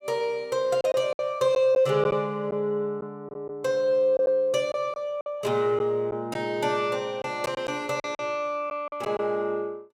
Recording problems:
lost packets; 6% of the sound replaced, filled with silence

